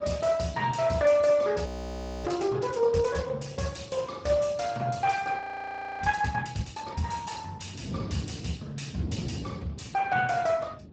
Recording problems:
lossy compression; Speex, log-spectral distance 6 dB, nothing above 7.3 kHz
wind noise; below 280 Hz, SNR 14 dB
frozen audio; at 1.5 s for 0.5 s and at 5.5 s for 0.5 s

